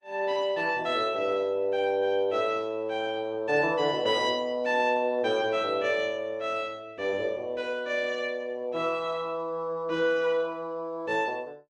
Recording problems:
codec artefacts; Opus, log-spectral distance 2 dB

